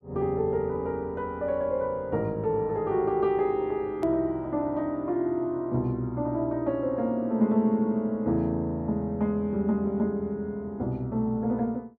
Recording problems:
hard cut with a click; at 4 s

